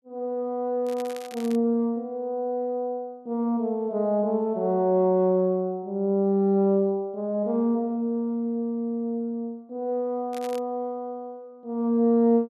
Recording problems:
crackling; at 1 s and at 10 s; loose cable, SNR 20 dB

